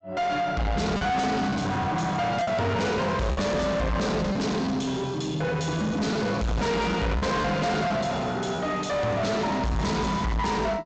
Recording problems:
treble cut off; nothing above 8 kHz
distortion; soft clipping, signal-to-distortion ratio 6 dB
lost packets; 3% of the sound replaced, filled with repeated pitch periods

